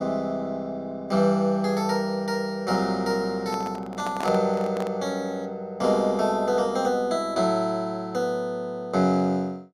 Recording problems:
microphone handling noise; from 3.5 to 5 s; peak -2 dB vs average level

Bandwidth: 15 kHz